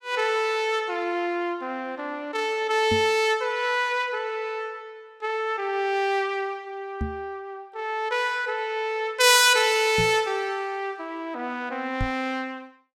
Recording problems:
knock on the microphone; 4 times, first at 3 s; peak -1 dB vs average level

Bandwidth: 16 kHz